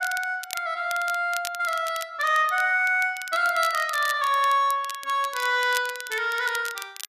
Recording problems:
crackle; vinyl, SNR 14 dB

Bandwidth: 14.5 kHz